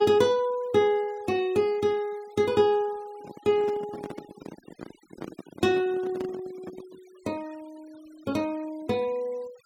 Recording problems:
denoising artefacts; signal-to-artefact ratio 25 dB
microphone handling noise; from 3 to 7 s; peak -6 dB vs average level

